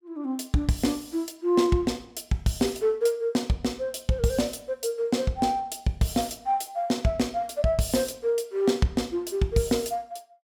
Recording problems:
none

